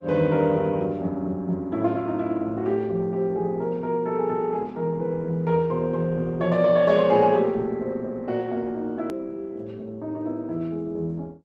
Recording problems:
lossy codec; Opus, log-spectral distance 2 dB, nothing above 13.1 kHz
hard cut with a click; at 9 s

